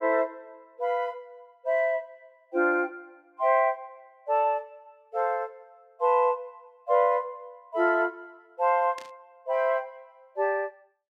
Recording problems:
static burst; at 9 s; peak -12 dB vs average level

